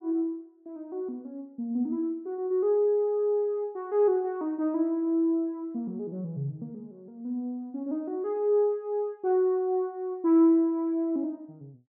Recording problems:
none

